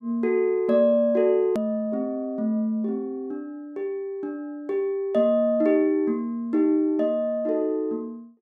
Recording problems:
click at an edit; at 1.5 s

